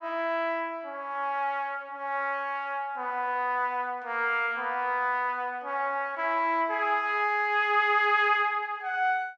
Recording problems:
none

